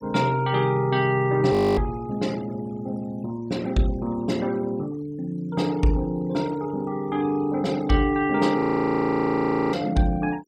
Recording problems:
noise reduction artefacts; signal-to-artefact ratio 22 dB
audio freezing; at 1.5 s and at 8.5 s for 1 s

